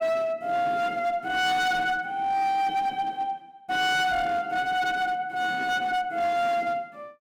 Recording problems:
distortion; hard clipping, uneven, signal-to-distortion ratio 8 dB

